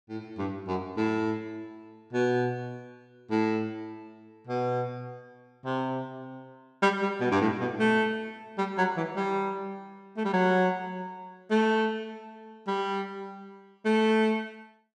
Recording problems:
none

